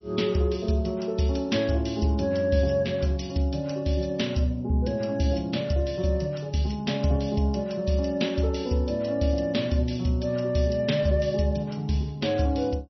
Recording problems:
codec artefacts; MP3, log-spectral distance 3 dB, nothing above 5.8 kHz

